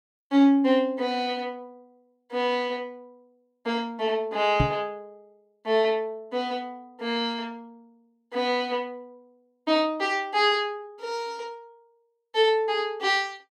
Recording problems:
microphone bump; at 4.5 s; peak +5 dB vs average level

